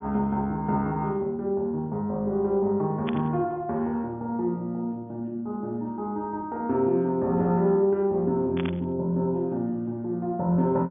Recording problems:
low-pass filter; nothing above 3.5 kHz
static burst; at 3 s and at 8.5 s; peak -5 dB vs average level

